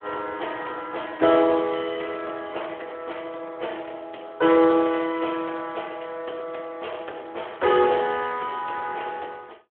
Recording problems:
phone line; 280 Hz to 3.4 kHz, Speex

